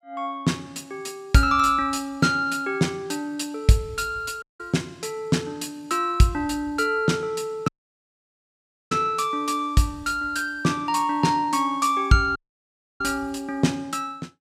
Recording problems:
dropout; at 4.5 s, at 7.5 s for 1 s and at 12 s for 0.5 s

